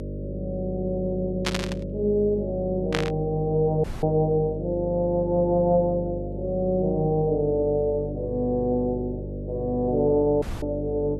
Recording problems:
electrical hum; 50 Hz, harmonics up to 600 Hz, SNR 9 dB
burst of static; at 1.5 s and at 3 s; peak +2 dB vs average level
dropout; at 4 s and at 10 s

